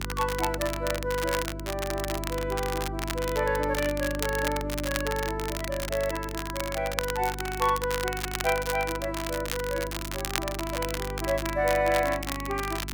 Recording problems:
hum; 50 Hz, harmonics up to 400 Hz, SNR 8 dB
crackle; vinyl, SNR 6 dB

